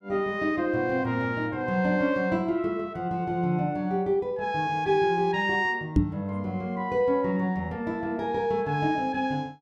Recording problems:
microphone bump; at 6 s; peak +9 dB vs average level

